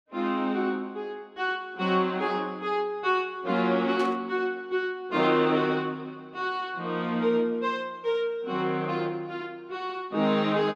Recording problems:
burst of static; at 4 s; peak -9 dB vs average level

